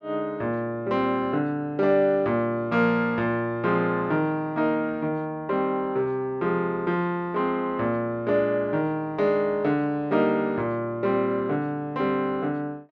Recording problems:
none

